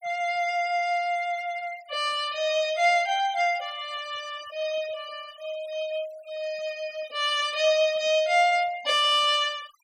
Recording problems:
noise reduction artefacts; signal-to-artefact ratio 21 dB

